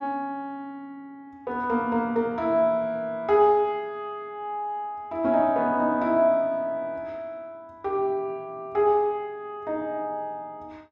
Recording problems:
none

